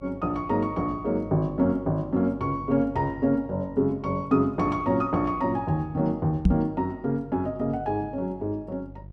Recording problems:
electrical hum; 50 Hz, harmonics up to 550 Hz, SNR 19 dB
knock on the microphone; at 6.5 s; peak +9 dB vs average level

